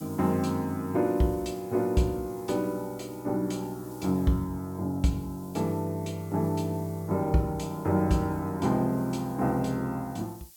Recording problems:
hiss; SNR 23 dB

